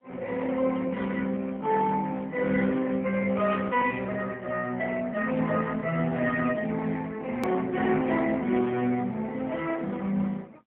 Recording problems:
telephone audio; 150 Hz to 3.4 kHz, AMR-NB, then MP3
edit click; at 7.5 s

